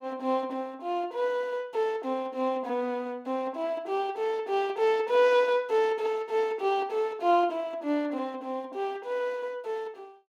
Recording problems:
none

